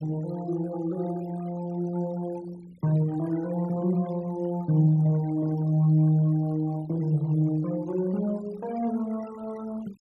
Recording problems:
denoising artefacts; signal-to-artefact ratio 23 dB

